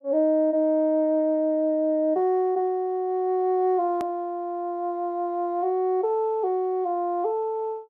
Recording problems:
edit click; at 4 s

